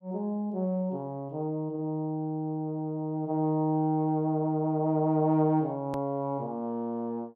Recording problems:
hard cut with a click; at 6 s

